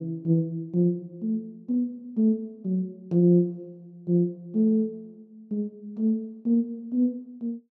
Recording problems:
none

